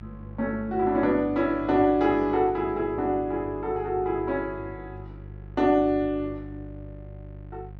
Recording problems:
hum; 50 Hz, harmonics up to 700 Hz, SNR 17 dB

